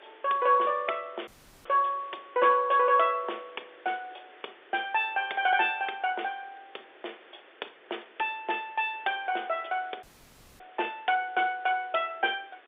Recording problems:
telephone audio; 300 Hz to 3.6 kHz, G.711
hiss; SNR 26 dB
dropout; at 1.5 s and at 10 s for 0.5 s

